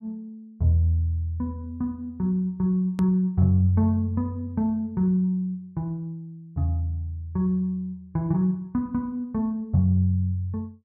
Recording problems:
edit click; at 3 s

